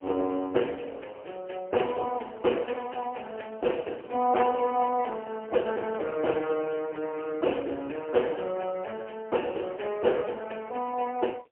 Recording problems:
telephone audio; 280 Hz to 3 kHz, AMR-NB, then MP3
distortion; soft clipping, signal-to-distortion ratio 14 dB

